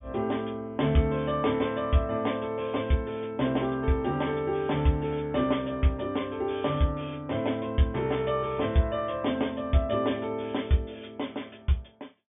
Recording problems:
treble cut off; nothing above 3.5 kHz

